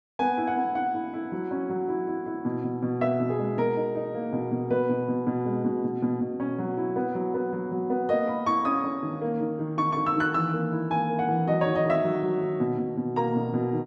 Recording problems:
none

